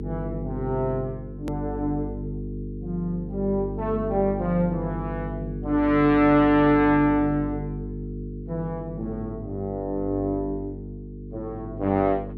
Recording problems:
hum; 50 Hz, harmonics up to 450 Hz, SNR 9 dB
hard cut with a click; at 1.5 s

